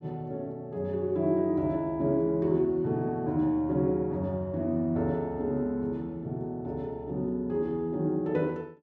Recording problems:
none

